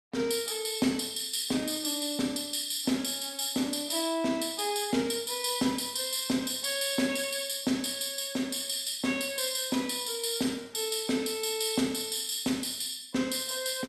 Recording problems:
none

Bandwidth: 13.5 kHz